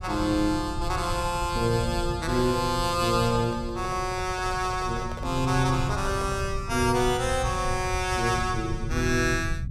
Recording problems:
low-frequency rumble; below 120 Hz, SNR 8 dB
handling noise; from 3 to 6.5 s; peak -9 dB vs average level

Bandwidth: 15.5 kHz